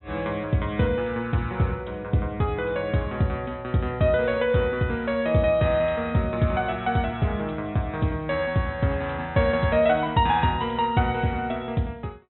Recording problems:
treble cut off; nothing above 4 kHz

